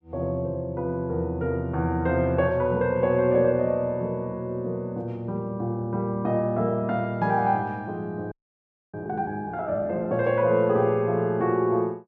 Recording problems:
frozen audio; at 8.5 s for 0.5 s

